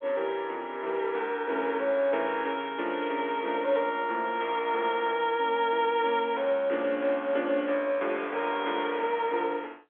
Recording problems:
telephone audio; 240 Hz to 3.6 kHz, G.711

